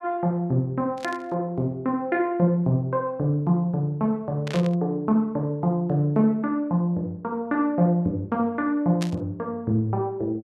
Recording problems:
burst of static; at 1 s, at 4.5 s and at 9 s; peak -5 dB vs average level

